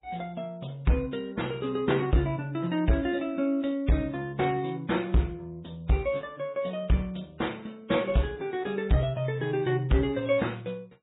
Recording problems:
treble missing; nothing above 3.8 kHz
codec artefacts; MP3, log-spectral distance 4 dB
distortion; hard clipping, uneven, signal-to-distortion ratio 11 dB

